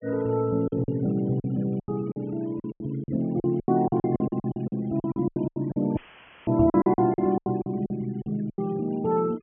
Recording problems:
low-pass filter; nothing above 3.2 kHz
denoising artefacts; signal-to-artefact ratio 26 dB
lost packets; 17% of the sound replaced, filled with silence
dropout; at 6 s for 0.5 s; filled with static
knock on the microphone; at 6.5 s; peak +2 dB vs average level

